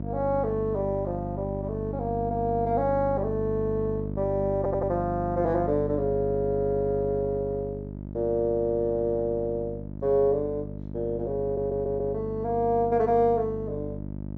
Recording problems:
hum; 50 Hz, harmonics up to 700 Hz, SNR 7 dB
stutter; at 4.5 s and at 11 s

